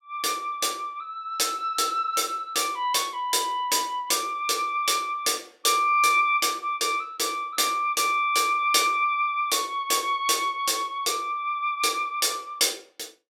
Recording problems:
none

